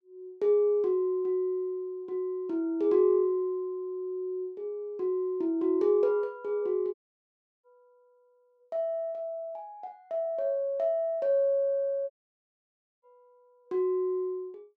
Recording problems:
audio cutting out; at 7 s for 0.5 s and at 12 s for 1 s

